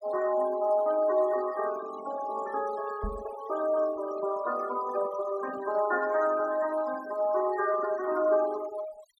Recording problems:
noise reduction artefacts; signal-to-artefact ratio 17 dB
knock on the microphone; at 3 s; peak -3 dB vs average level

